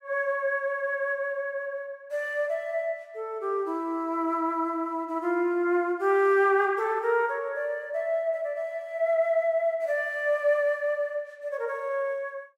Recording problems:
none

